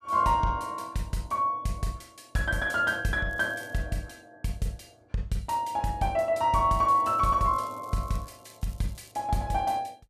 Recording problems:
crackle; at 3.5 s and from 7 to 9 s; loose cable, SNR 27 dB

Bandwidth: 14.5 kHz